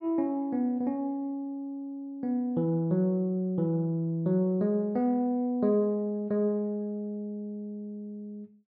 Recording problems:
none

